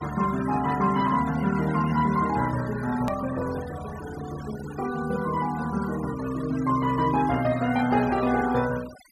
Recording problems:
denoising artefacts; signal-to-artefact ratio 15 dB
edit click; at 3 s

